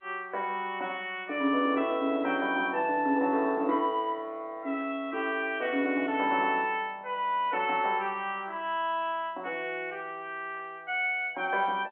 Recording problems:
phone line; 220 Hz to 3.3 kHz, G.711

